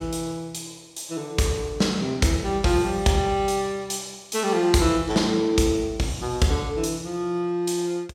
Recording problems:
none

